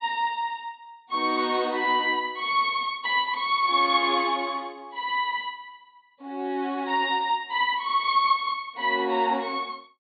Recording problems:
low-pass filter; nothing above 4.5 kHz

